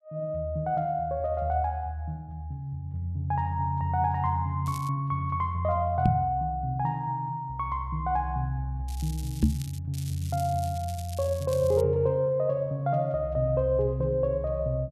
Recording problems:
crackle; at 4.5 s, at 9 s and from 10 to 12 s; loose cable, SNR 17 dB
microphone bump; at 6 s and at 9.5 s; peak +9 dB vs average level

